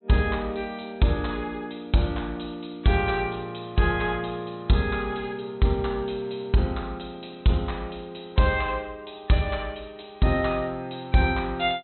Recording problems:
low-pass filter; nothing above 4.1 kHz

